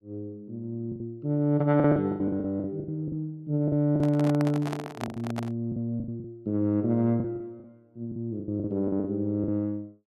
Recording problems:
packet loss; 13% of the sound replaced, filled with the last packet
handling noise; from 4 to 5.5 s; peak -2 dB vs average level

